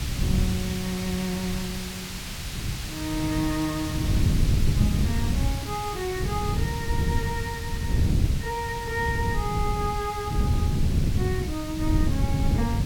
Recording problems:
hiss; slope +1 dB per octave, SNR 6 dB
wind on the microphone; below 150 Hz, SNR -3 dB

